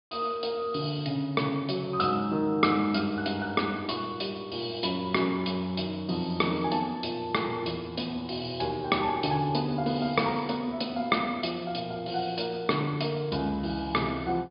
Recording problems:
low-pass filter; nothing above 5.1 kHz

